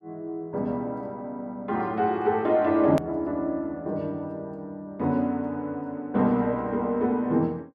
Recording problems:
hard cut with a click; at 3 s

